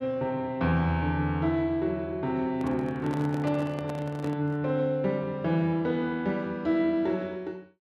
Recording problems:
microphone handling noise; from 2.5 to 4.5 s; peak -7 dB vs average level

